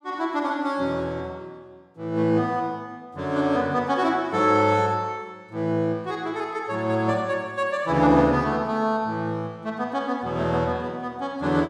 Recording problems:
none

